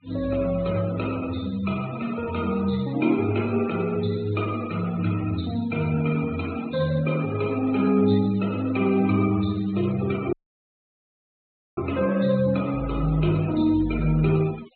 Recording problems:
low-pass filter; nothing above 4 kHz
noise reduction artefacts; signal-to-artefact ratio 18 dB
audio cutting out; at 10 s for 1.5 s

